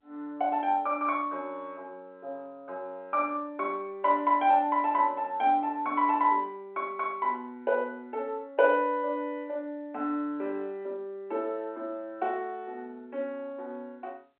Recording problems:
phone line; 320 Hz to 3.6 kHz, G.711

